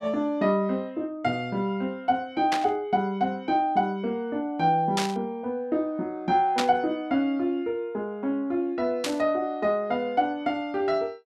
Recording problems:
static burst; 4 times, first at 2.5 s; peak +4 dB vs average level

